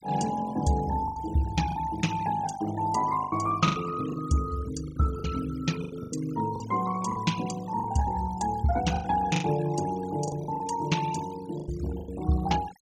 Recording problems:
denoising artefacts; signal-to-artefact ratio 15 dB
lost packets; 9% of the sound replaced, filled with the last packet

